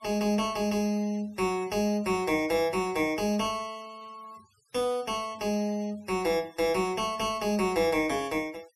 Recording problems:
denoising artefacts; signal-to-artefact ratio 25 dB

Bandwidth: 14 kHz